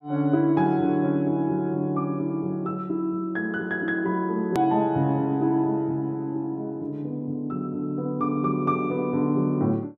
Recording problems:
click at an edit; at 4.5 s

